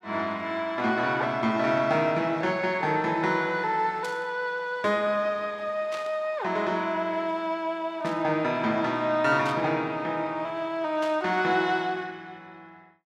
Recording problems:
static burst; 5 times, first at 4 s; peak -9 dB vs average level

